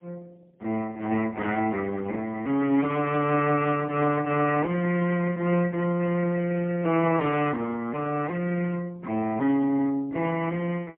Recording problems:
telephone audio; 190 Hz to 3.4 kHz, AMR-NB, then MP3

